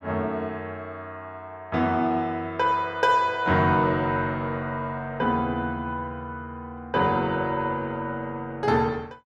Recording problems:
none

